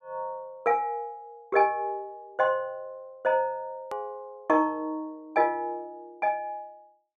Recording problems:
edit click; at 4 s

